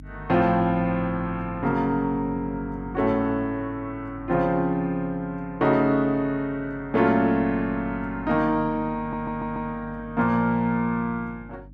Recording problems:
electrical hum; 50 Hz, harmonics up to 300 Hz, SNR 18 dB
audio stuttering; at 9 s

